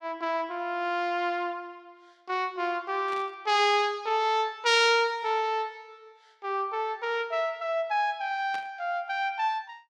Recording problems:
static burst; at 3 s and at 8.5 s; peak -11 dB vs average level

